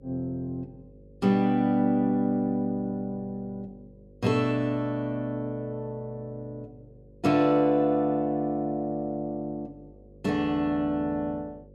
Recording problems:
hum; 50 Hz, harmonics up to 550 Hz, SNR 25 dB

